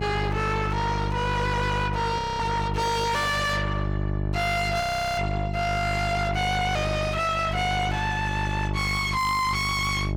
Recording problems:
distortion; soft clipping, signal-to-distortion ratio 6 dB
hum; 50 Hz, harmonics up to 1.1 kHz, SNR 3 dB
frozen audio; at 2 s and at 5 s

